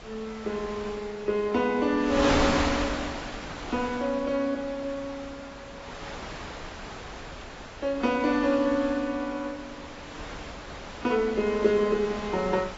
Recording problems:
lossy codec; AAC, log-spectral distance 4 dB, nothing above 7.3 kHz
wind noise; below 2.4 kHz, SNR 8 dB

